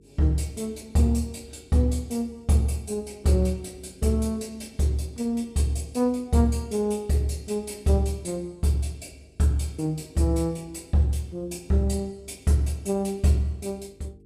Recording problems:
hum; 50 Hz, harmonics up to 450 Hz, SNR 30 dB

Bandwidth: 14.5 kHz